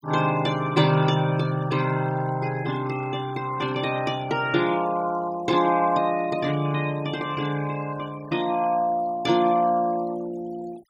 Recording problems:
noise reduction artefacts; signal-to-artefact ratio 19 dB

